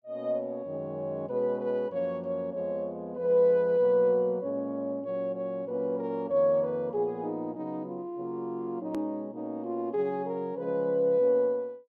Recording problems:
edit click; at 9 s

